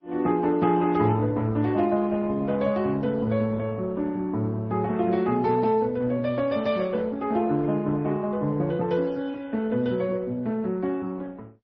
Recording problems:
lossy compression; Opus, then MP3, log-spectral distance 2 dB, nothing above 5.2 kHz

